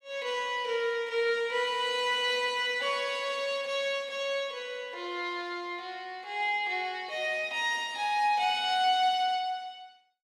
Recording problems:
none

